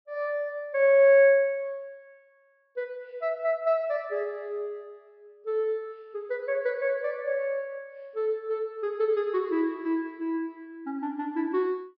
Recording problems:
low-pass filter; nothing above 5.5 kHz

